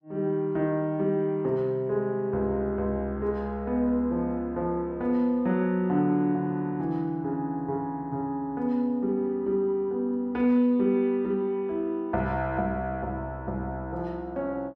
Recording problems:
none

